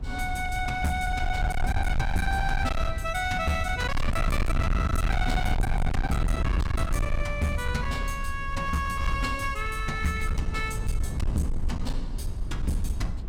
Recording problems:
distorted audio; hard clipping, signal-to-distortion ratio 6 dB
rumble; below 92 Hz, SNR 1 dB

